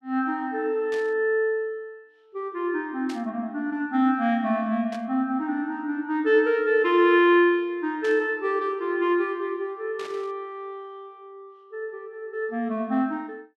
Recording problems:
static burst; 5 times, first at 1 s; peak -11 dB vs average level

